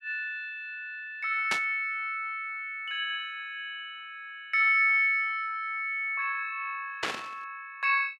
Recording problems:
static burst; at 1.5 s and at 7 s; peak +3 dB vs average level

